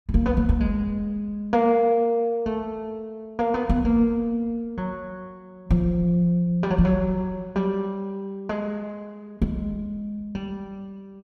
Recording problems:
none

